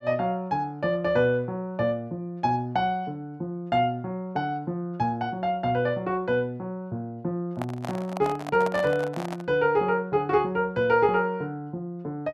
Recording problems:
microphone handling noise; from 7.5 to 9.5 s; peak -3 dB vs average level

